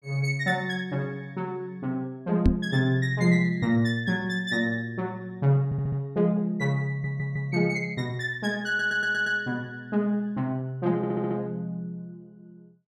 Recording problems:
knock on the microphone; at 2.5 s; peak +9 dB vs average level
audio stuttering; 4 times, first at 5.5 s

